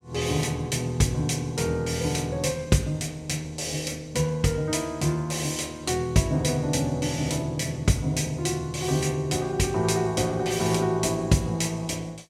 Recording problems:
none

